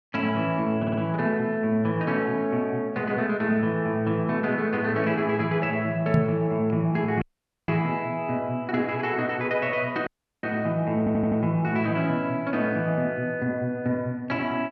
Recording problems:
audio stuttering; at 1 s and at 11 s
microphone thump; at 6 s; peak +5 dB vs average level
audio cutting out; at 7 s and at 10 s

